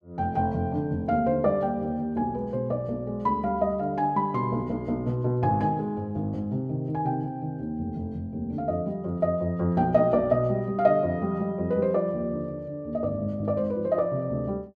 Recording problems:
none

